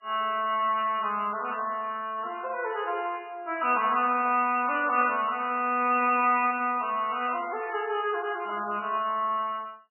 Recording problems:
lossy compression; MP3, log-spectral distance 2 dB, nothing above 2.4 kHz

